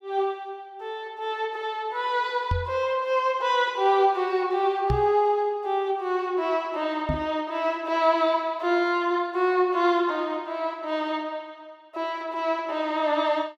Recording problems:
microphone bump; at 2.5 s, at 5 s and at 7 s; peak +2 dB vs average level

